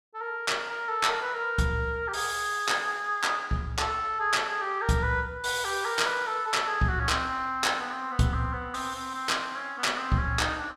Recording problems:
none

